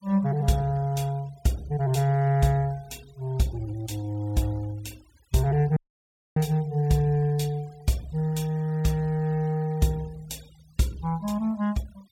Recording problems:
noise reduction artefacts; signal-to-artefact ratio 25 dB
audio cutting out; at 6 s for 0.5 s

